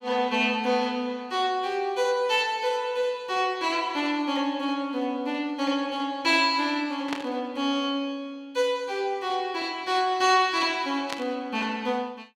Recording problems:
static burst; at 7 s and at 11 s; peak -2 dB vs average level

